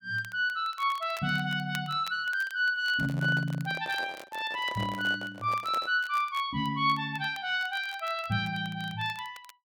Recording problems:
crackle; vinyl, SNR 21 dB
handling noise; from 3 to 6 s; peak -7 dB vs average level

